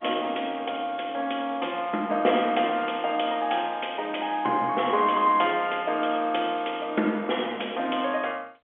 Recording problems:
phone line; 240 Hz to 3.4 kHz, G.711

